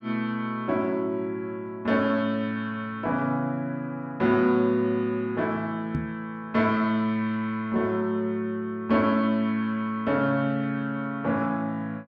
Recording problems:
knock on the microphone; at 6 s; peak +2 dB vs average level

